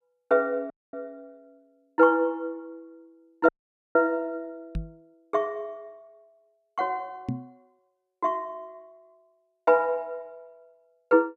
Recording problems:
audio cutting out; at 0.5 s and at 3.5 s
microphone thump; at 5 s and at 7.5 s; peak -1 dB vs average level

